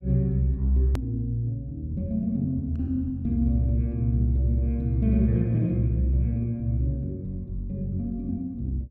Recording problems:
edit click; at 1 s

